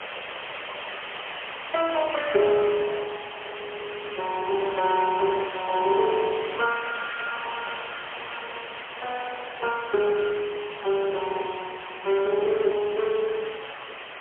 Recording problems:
telephone audio; 340 Hz to 3.3 kHz, AMR-NB, then MP3
background hiss; SNR 9 dB

